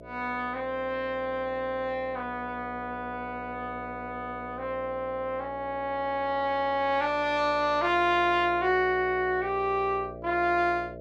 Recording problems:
electrical hum; 60 Hz, harmonics up to 660 Hz, SNR 15 dB

